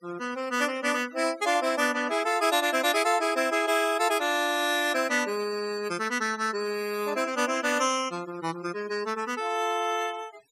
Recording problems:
denoising artefacts; signal-to-artefact ratio 18 dB

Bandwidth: 15.5 kHz